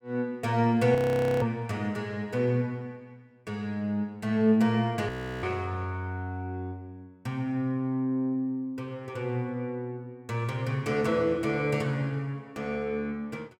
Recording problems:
frozen audio; at 1 s and at 5 s

